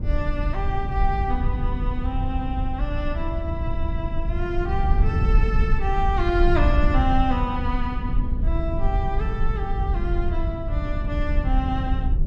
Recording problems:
low-frequency rumble; below 74 Hz, SNR -3 dB

